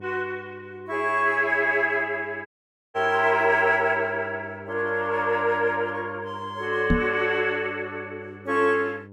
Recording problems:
electrical hum; 50 Hz, harmonics up to 1 kHz, SNR 21 dB
dropout; at 2.5 s
microphone bump; at 7 s; peak +5 dB vs average level

